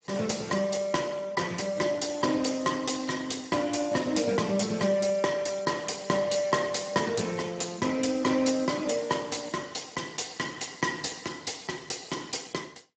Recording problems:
lossy compression; Speex, log-spectral distance 8 dB, nothing above 7.3 kHz

